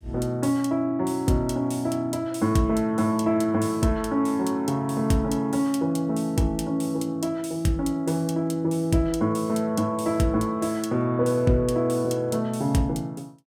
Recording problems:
none

